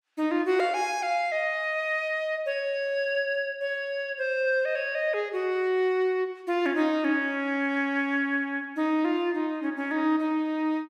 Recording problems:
none

